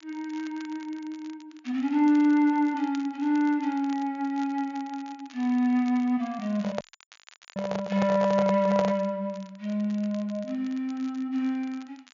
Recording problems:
low-pass filter; nothing above 7 kHz
crackle; vinyl, SNR 25 dB
handling noise; from 6.5 to 9 s; peak +1 dB vs average level
audio cutting out; at 7 s for 1 s

